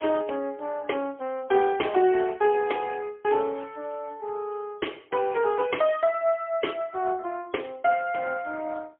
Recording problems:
telephone audio; 240 Hz to 3.3 kHz, AMR-NB, then MP3

